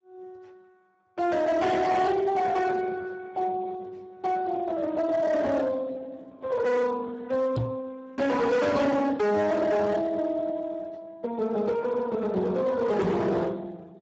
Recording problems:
codec artefacts; Speex, log-spectral distance 3 dB, nothing above 7.6 kHz
distorted audio; hard clipping, signal-to-distortion ratio 7 dB
microphone bump; at 7.5 s and at 13 s; peak +3 dB vs average level

